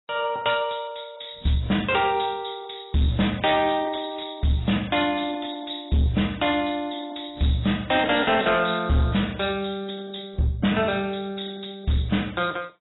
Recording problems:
lossy compression; AAC, log-spectral distance 13 dB, nothing above 3.8 kHz
distorted audio; hard clipping, signal-to-distortion ratio 10 dB

